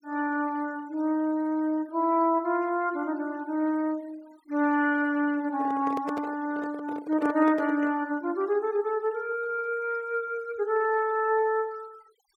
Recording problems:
noise reduction artefacts; signal-to-artefact ratio 26 dB
handling noise; from 5.5 to 8 s; peak -3 dB vs average level

